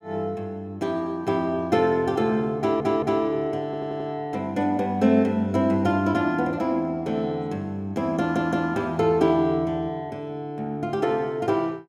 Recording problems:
audio stuttering; at 2.5 s, at 3.5 s and at 8 s

